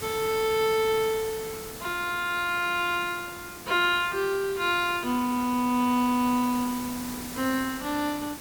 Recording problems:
background hiss; slope -3 dB per octave, SNR 12 dB

